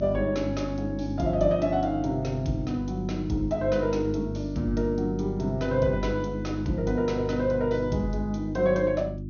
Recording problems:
treble missing; nothing above 6.5 kHz
electrical hum; 50 Hz, harmonics up to 350 Hz, SNR 7 dB

